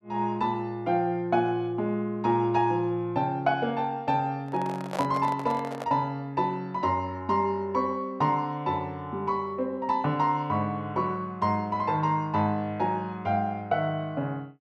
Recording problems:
microphone handling noise; from 4.5 to 6 s; peak 0 dB vs average level

